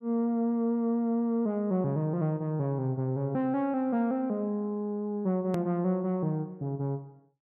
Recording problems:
hard cut with a click; at 5.5 s

